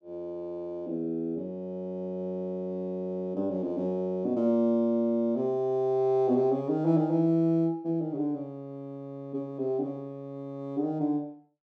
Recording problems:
none

